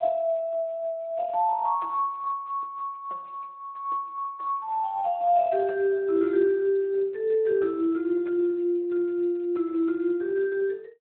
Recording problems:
phone line; 260 Hz to 3.4 kHz, Speex

